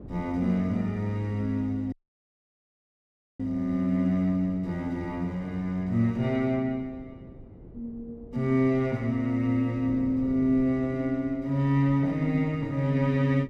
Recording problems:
wind noise; below 300 Hz, SNR 19 dB
audio cutting out; at 2 s for 1.5 s

